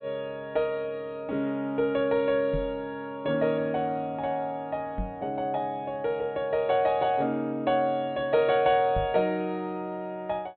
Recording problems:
treble missing; nothing above 4 kHz
microphone thump; at 2.5 s, at 5 s and at 9 s; peak -2 dB vs average level

